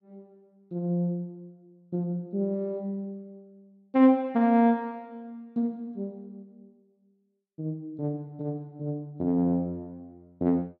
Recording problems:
none

